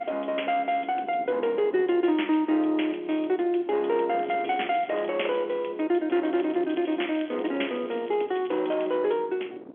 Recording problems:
phone line; 260 Hz to 3.4 kHz, G.711
wind noise; below 460 Hz, SNR 20 dB
crackle; at 4 s and from 6 to 9 s; loose cable, SNR 24 dB

